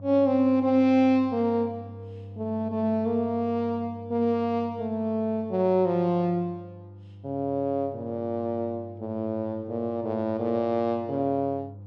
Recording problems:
electrical hum; 50 Hz, harmonics up to 500 Hz, SNR 18 dB

